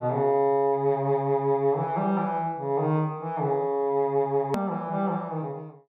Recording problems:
hard cut with a click; at 4.5 s

